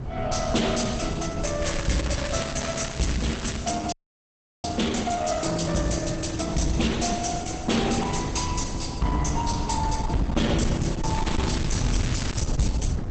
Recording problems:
lossy compression; Opus, log-spectral distance 7 dB, nothing above 8 kHz
distorted audio; hard clipping, uneven, signal-to-distortion ratio 10 dB
wind noise; below 150 Hz, SNR 6 dB
crackle; from 1.5 to 3.5 s and from 11 to 12 s; loose cable, SNR 8 dB
audio freezing; at 4 s for 0.5 s

